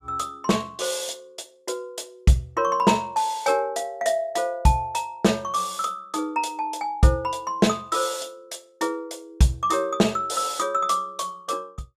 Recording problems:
none

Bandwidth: 15.5 kHz